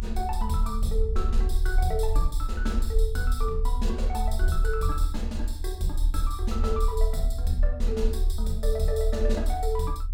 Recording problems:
low-frequency rumble; below 48 Hz, strongest tone 32 Hz, SNR -3 dB

